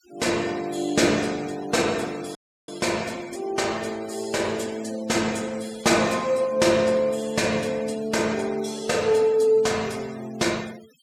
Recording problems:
noise reduction artefacts; signal-to-artefact ratio 20 dB
dropout; at 2.5 s

